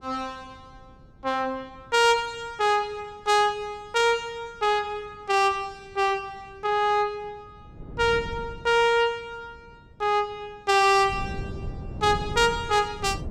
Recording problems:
wind on the microphone; below 200 Hz, SNR 14 dB

